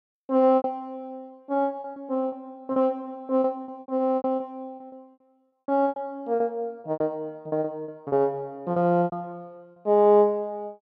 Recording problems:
lost packets; 12% of the sound replaced, filled with repeated pitch periods

